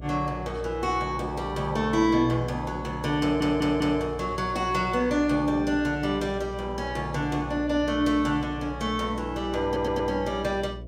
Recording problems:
hum; 60 Hz, harmonics up to 660 Hz, SNR 13 dB
stutter; at 3 s and at 9.5 s

